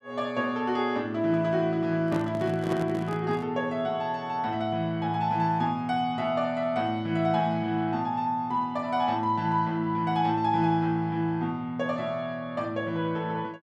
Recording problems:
handling noise; from 2 to 3.5 s; peak -2 dB vs average level

